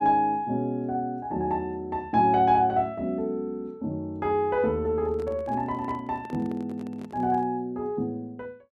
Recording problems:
microphone handling noise; from 5 to 7.5 s; peak -11 dB vs average level

